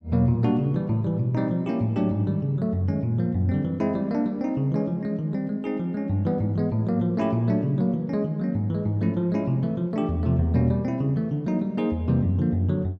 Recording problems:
none

